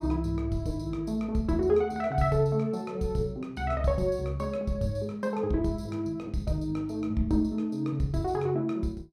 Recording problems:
none

